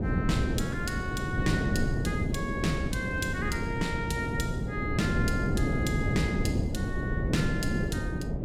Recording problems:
wind noise; below 280 Hz, SNR -3 dB

